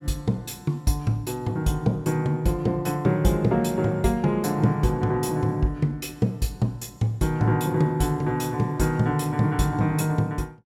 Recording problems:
none

